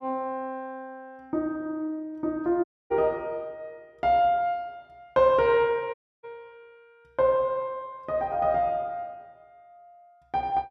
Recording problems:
audio cutting out; at 2.5 s and at 6 s

